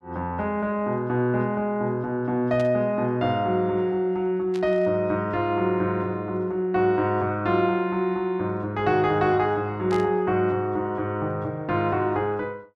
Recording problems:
static burst; at 2.5 s, at 4.5 s and at 10 s; peak -11 dB vs average level

